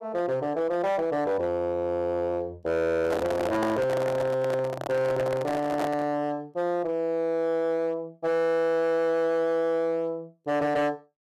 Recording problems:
distorted audio; hard clipping, signal-to-distortion ratio 11 dB
microphone handling noise; from 3 to 6 s; peak 0 dB vs average level

